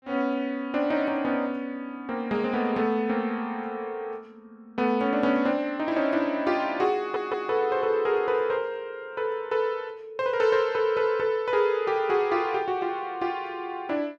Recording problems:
audio stuttering; at 7 s

